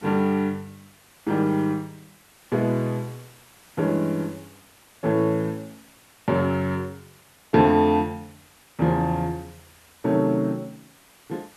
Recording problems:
background hiss; slope -2 dB per octave, SNR 27 dB

